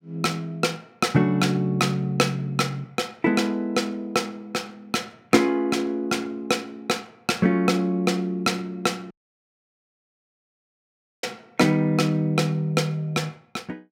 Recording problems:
audio cutting out; at 9 s for 2 s

